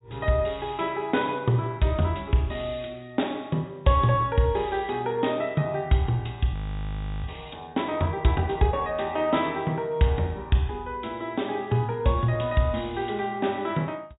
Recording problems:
treble cut off; nothing above 4 kHz
frozen audio; at 6.5 s for 0.5 s

